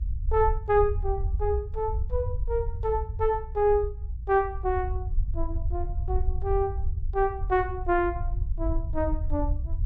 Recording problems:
rumble; below 74 Hz, SNR 4 dB

